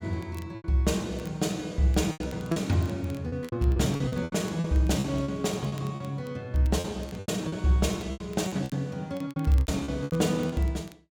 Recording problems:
crackle; vinyl, SNR 26 dB
lost packets; 14% of the sound replaced, filled with repeated pitch periods

